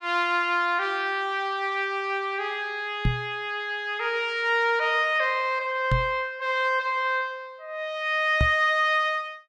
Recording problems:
knock on the microphone; at 3 s, at 6 s and at 8.5 s; peak +4 dB vs average level

